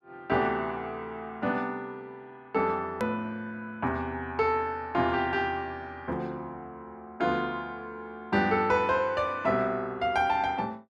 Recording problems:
edit click; at 3 s

